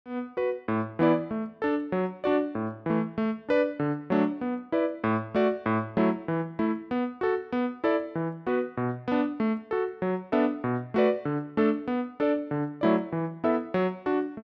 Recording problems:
none

